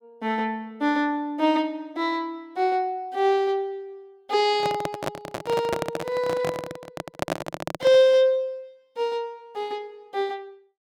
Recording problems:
microphone handling noise; from 4.5 to 8 s; peak +2 dB vs average level

